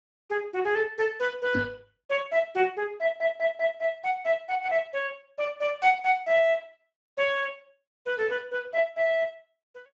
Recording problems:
lossy compression; Speex, log-spectral distance 3 dB
microphone thump; at 1.5 s; peak +2 dB vs average level
audio stuttering; at 3 s

